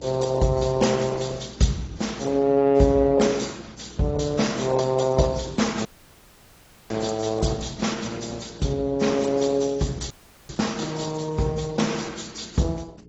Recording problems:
codec artefacts; Opus, then AAC, log-spectral distance 6 dB, nothing above 7.6 kHz
hum; 60 Hz, harmonics up to 420 Hz, SNR 22 dB
audio cutting out; at 6 s for 1 s and at 10 s

